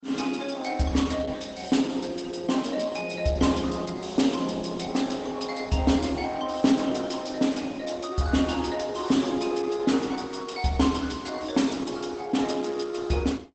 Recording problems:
lossy compression; Opus, log-spectral distance 5 dB, nothing above 8 kHz

